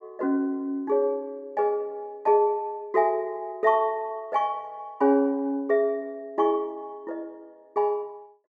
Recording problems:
none

